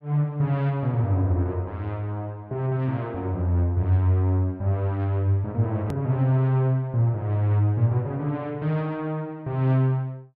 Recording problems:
hard cut with a click; at 6 s

